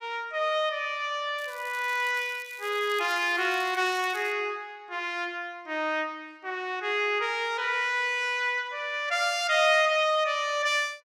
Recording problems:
crackle; from 1.5 to 4.5 s; loose cable, SNR 21 dB

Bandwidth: 15.5 kHz